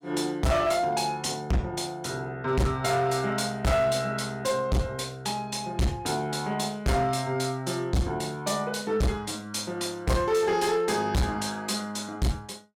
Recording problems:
distortion; hard clipping, signal-to-distortion ratio 6 dB

